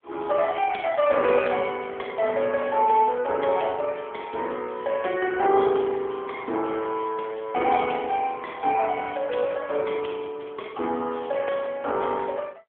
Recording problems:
telephone audio; 280 Hz to 3.3 kHz, AMR-NB

